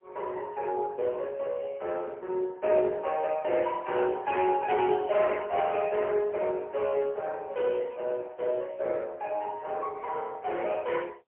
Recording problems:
phone line; 320 Hz to 3.2 kHz, AMR-NB, then MP3

